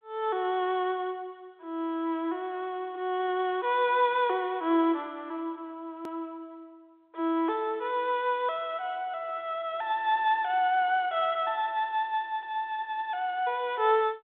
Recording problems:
telephone audio; 280 Hz to 3.5 kHz, G.726
click at an edit; at 6 s

